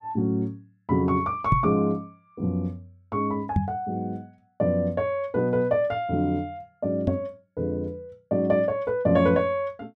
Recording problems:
microphone bump; at 1.5 s, at 3.5 s and at 7 s; peak +7 dB vs average level

